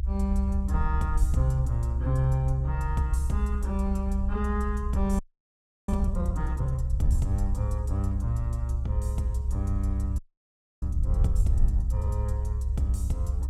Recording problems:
rumble; below 68 Hz, SNR -2 dB
audio freezing; at 5 s for 0.5 s and at 10 s for 0.5 s

